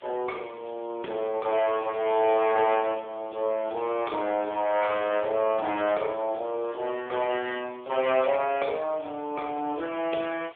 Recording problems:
telephone audio; 280 Hz to 3.4 kHz, AMR-NB
background hiss; SNR 27 dB

